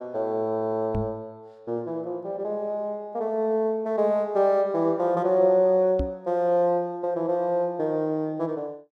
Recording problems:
microphone bump; at 1 s and at 6 s; peak -1 dB vs average level

